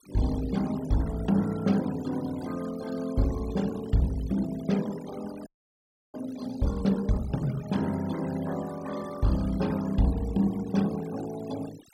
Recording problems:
noise reduction artefacts; signal-to-artefact ratio 17 dB
audio freezing; at 5.5 s for 0.5 s

